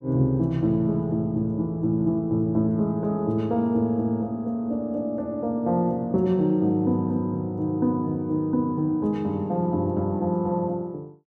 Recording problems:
none

